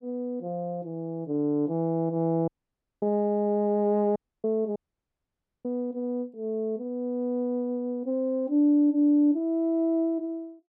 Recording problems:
dropout; at 2.5 s for 0.5 s, at 4 s and at 5 s for 1 s

